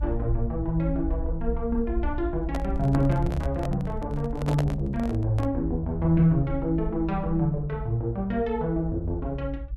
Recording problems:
rumble; below 60 Hz, SNR 8 dB
handling noise; from 2.5 to 5.5 s; peak 0 dB vs average level

